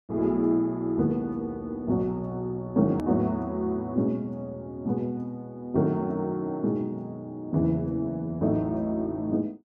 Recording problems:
edit click; at 3 s

